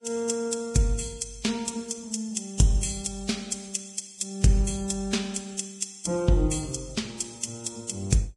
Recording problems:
lossy compression; Vorbis, log-spectral distance 5 dB, nothing above 10.1 kHz

